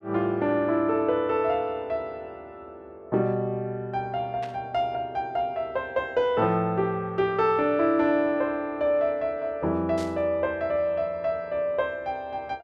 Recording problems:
burst of static; at 4.5 s and at 10 s; peak -12 dB vs average level

